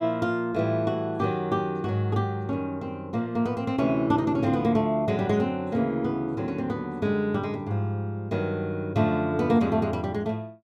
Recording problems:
none

